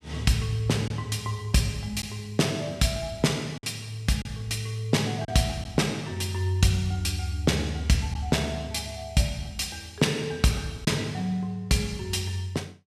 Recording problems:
packet loss; 1.4% of the sound replaced, filled with silence

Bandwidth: 14.5 kHz